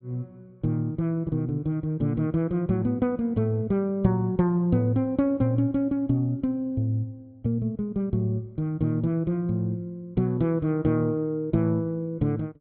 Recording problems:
treble missing; nothing above 4.2 kHz

